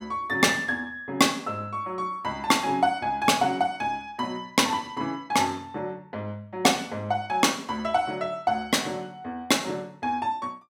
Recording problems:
none

